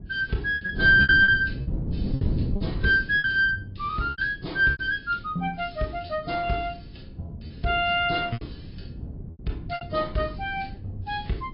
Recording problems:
treble cut off; nothing above 4.8 kHz
lossy codec; AAC, log-spectral distance 2 dB
wind noise; below 190 Hz, SNR 11 dB
lost packets; 7% of the sound replaced, filled with repeated pitch periods

